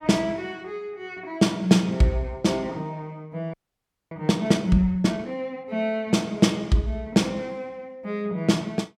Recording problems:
audio freezing; at 3.5 s for 0.5 s

